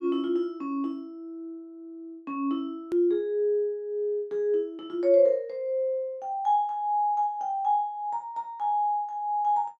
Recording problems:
hard cut with a click; at 3 s

